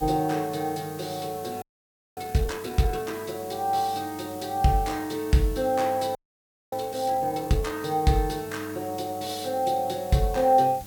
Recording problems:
hum; 50 Hz, harmonics up to 1 kHz, SNR 21 dB
background hiss; slope -2 dB per octave, SNR 18 dB
audio freezing; at 1.5 s for 0.5 s and at 6 s for 0.5 s

